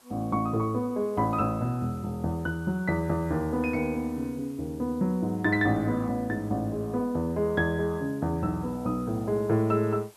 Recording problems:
hiss; SNR 27 dB

